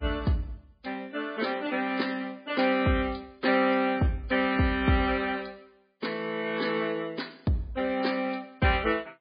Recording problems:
codec artefacts; MP3, log-spectral distance 4 dB, nothing above 4.5 kHz

